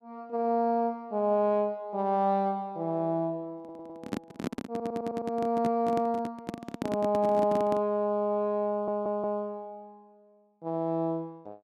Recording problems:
handling noise; from 3.5 to 8 s; peak +1 dB vs average level
stutter; at 3.5 s, at 4.5 s and at 8.5 s

